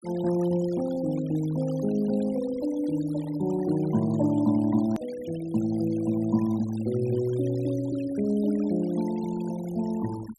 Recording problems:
noise reduction artefacts; signal-to-artefact ratio 20 dB
hard cut with a click; at 5 s

